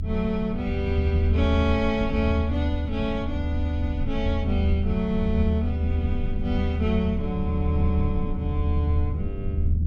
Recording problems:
low-frequency rumble; below 80 Hz, strongest tone 78 Hz, SNR -2 dB

